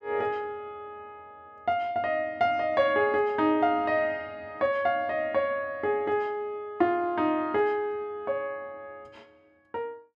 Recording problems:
none

